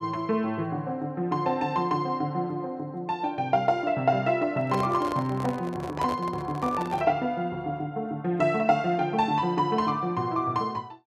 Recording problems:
handling noise; from 4.5 to 7 s; peak -2 dB vs average level

